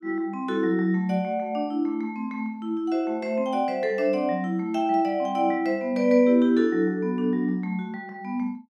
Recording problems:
none

